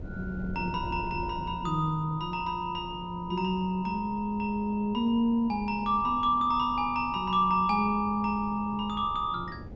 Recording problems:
treble missing; nothing above 8 kHz
wind on the microphone; below 240 Hz, SNR 15 dB

